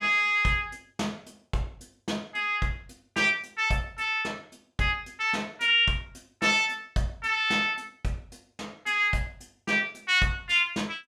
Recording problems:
none

